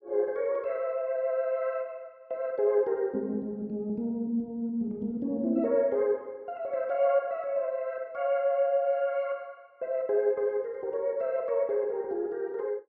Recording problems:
none

